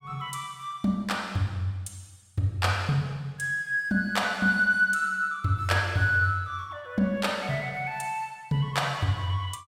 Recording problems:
none

